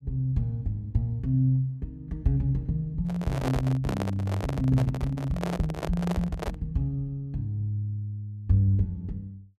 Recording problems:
handling noise; from 3 to 6.5 s; peak 0 dB vs average level

